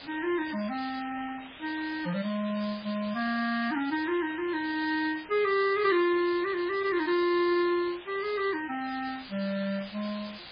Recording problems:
lossy compression; Vorbis, then MP3, log-spectral distance 14 dB, nothing above 4.4 kHz
hiss; SNR 14 dB

